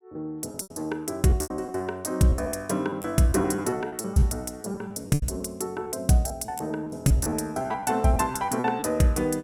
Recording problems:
packet loss; 15% of the sound replaced, filled with repeated pitch periods

